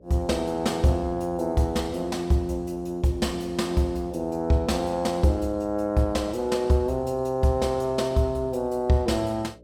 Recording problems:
hum; 60 Hz, harmonics up to 600 Hz, SNR 27 dB

